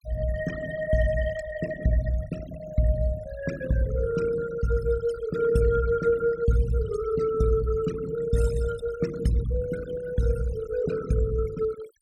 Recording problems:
denoising artefacts; signal-to-artefact ratio 14 dB

